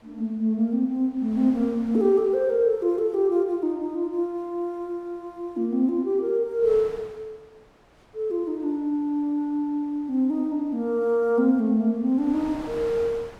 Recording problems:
wind noise; below 1.3 kHz, SNR 24 dB

